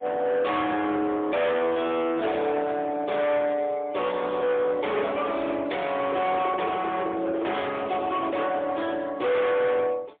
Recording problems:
telephone audio; 300 Hz to 3.5 kHz, AMR-NB, then MP3
distortion; hard clipping, uneven, signal-to-distortion ratio 7 dB
handling noise; from 6 to 7.5 s; peak -1 dB vs average level

